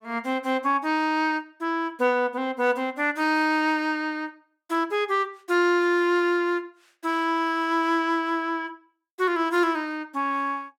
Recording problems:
none

